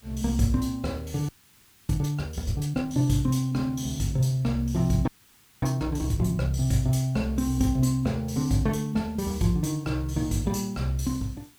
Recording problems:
hiss; SNR 28 dB
frozen audio; at 1.5 s for 0.5 s and at 5 s for 0.5 s

